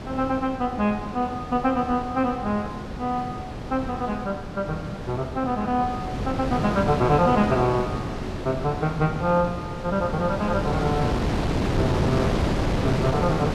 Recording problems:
wind on the microphone; below 560 Hz, SNR 3 dB

